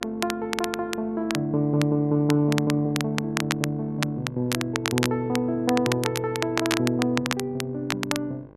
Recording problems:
electrical hum; 50 Hz, harmonics up to 1.7 kHz, SNR 21 dB
crackle; vinyl, SNR 6 dB

